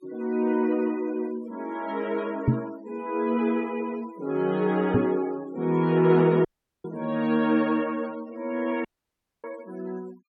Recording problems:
noise reduction artefacts; signal-to-artefact ratio 23 dB
microphone bump; at 2.5 s and at 5 s; peak +8 dB vs average level
audio cutting out; at 6.5 s and at 9 s for 0.5 s

